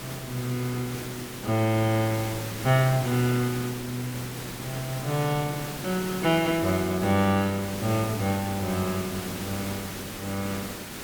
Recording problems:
hiss; slope -3 dB per octave, SNR 8 dB

